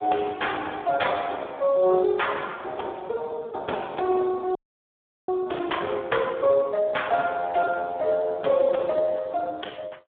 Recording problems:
telephone audio; 320 Hz to 3.6 kHz, Speex
audio freezing; at 4.5 s for 0.5 s

